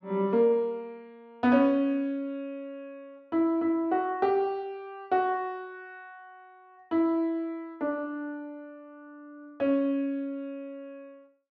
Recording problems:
none

